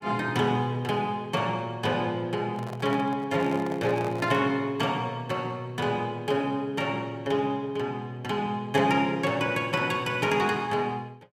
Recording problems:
handling noise; from 2.5 to 4.5 s; peak -8 dB vs average level

